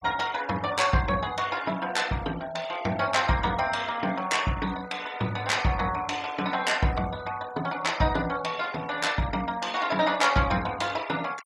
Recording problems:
noise reduction artefacts; signal-to-artefact ratio 18 dB

